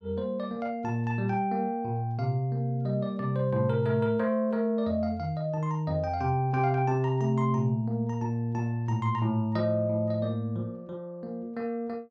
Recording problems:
none

